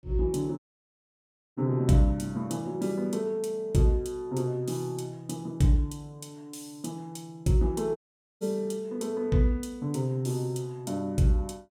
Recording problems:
audio cutting out; at 0.5 s for 1 s and at 8 s

